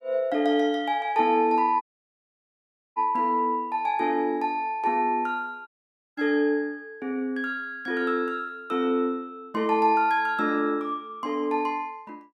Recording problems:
dropout; at 2 s for 1 s and at 5.5 s

